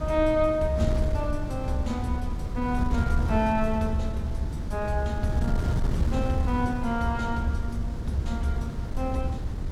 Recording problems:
wind noise; below 130 Hz, SNR 2 dB

